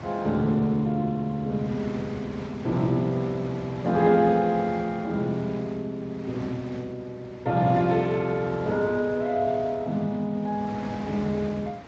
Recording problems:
lossy compression; Speex, log-spectral distance 2 dB
wind noise; below 1.2 kHz, SNR 15 dB

